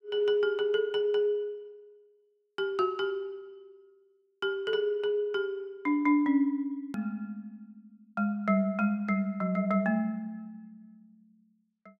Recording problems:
click at an edit; at 7 s

